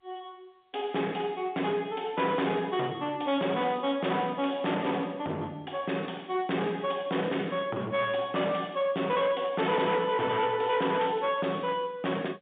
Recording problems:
telephone audio; 220 Hz to 3.6 kHz, G.711
distortion; hard clipping, uneven, signal-to-distortion ratio 8 dB

